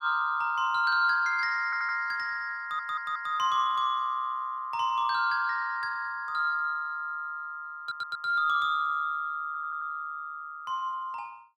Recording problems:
stutter; 4 times, first at 1.5 s

